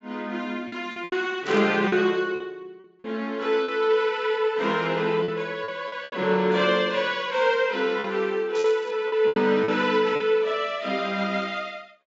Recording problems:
treble missing; nothing above 8 kHz
packet loss; 7% of the sound replaced, filled with repeated pitch periods
burst of static; at 1.5 s and at 8.5 s; peak -11 dB vs average level

